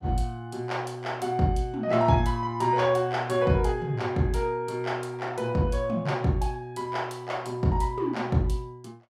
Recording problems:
none

